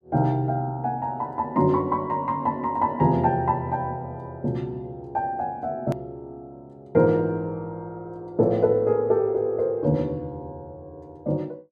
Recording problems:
click at an edit; at 6 s

